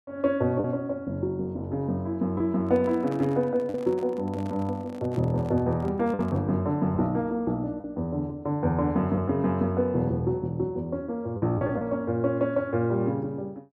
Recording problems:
packet loss; 3% of the sound replaced, filled with the last packet
handling noise; from 2.5 to 6.5 s; peak -9 dB vs average level

